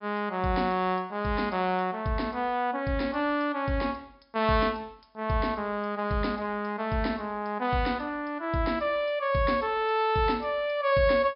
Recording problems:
low-pass filter; nothing above 5.5 kHz

